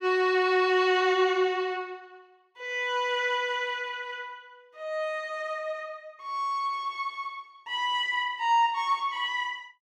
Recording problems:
none

